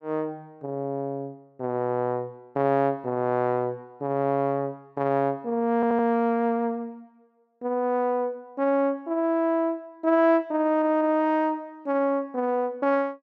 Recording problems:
stutter; at 6 s and at 11 s

